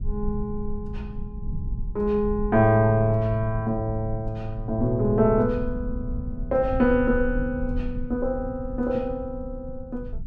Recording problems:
rumble; below 76 Hz, SNR 10 dB

